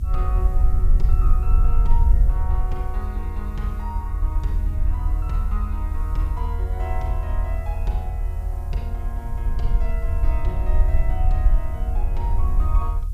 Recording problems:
hiss; slope +1 dB per octave, SNR 22 dB
rumble; below 58 Hz, SNR -11 dB

